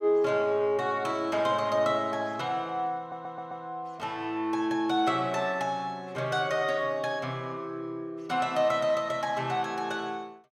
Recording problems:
audio stuttering; at 3 s

